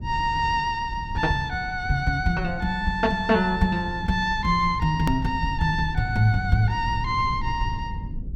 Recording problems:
rumble; below 110 Hz, SNR 11 dB
hard cut with a click; at 5 s

